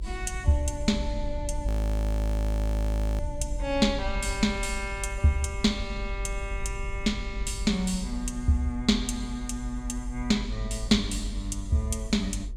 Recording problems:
hum; 60 Hz, harmonics up to 1.1 kHz, SNR 26 dB
rumble; below 56 Hz, strongest tone 52 Hz, SNR 5 dB
frozen audio; at 1.5 s for 1.5 s

